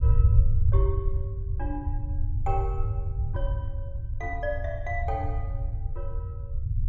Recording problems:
low-frequency rumble; below 96 Hz, SNR -7 dB

